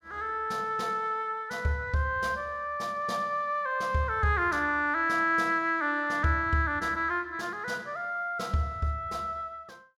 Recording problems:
none

